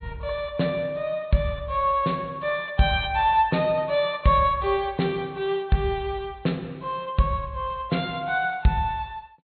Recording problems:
treble missing; nothing above 4.3 kHz

